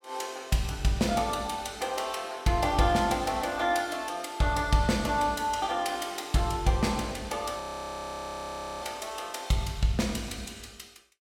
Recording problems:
frozen audio; at 7.5 s for 1 s

